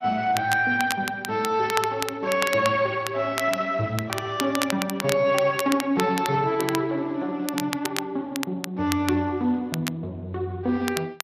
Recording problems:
lossy compression; MP2, then Speex, log-spectral distance 3 dB
crackling; vinyl, SNR 9 dB

